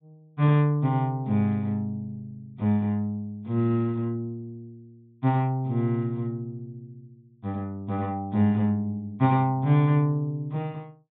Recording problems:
low-pass filter; nothing above 4 kHz

